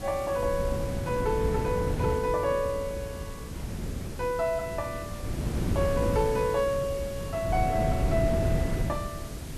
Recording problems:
hiss; slope 0 dB per octave, SNR 16 dB
wind noise; below 230 Hz, SNR 3 dB

